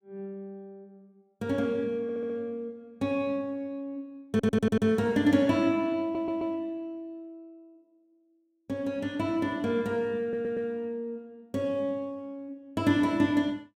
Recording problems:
stutter; 4 times, first at 2 s

